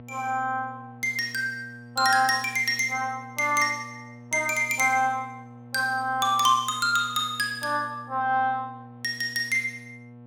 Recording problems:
hum; 60 Hz, harmonics up to 1.3 kHz, SNR 20 dB

